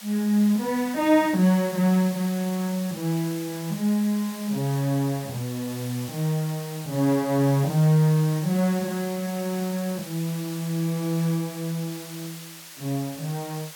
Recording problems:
background hiss; SNR 14 dB

